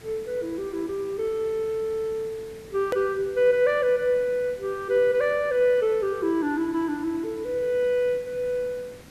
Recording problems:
background hiss; SNR 22 dB
click at an edit; at 3 s

